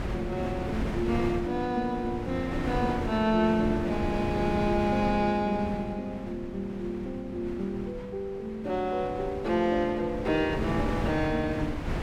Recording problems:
wind on the microphone; below 450 Hz, SNR 7 dB

